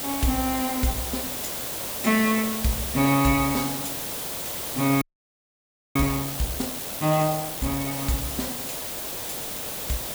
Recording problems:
background hiss; slope -3 dB per octave, SNR 3 dB
audio freezing; at 5 s for 1 s

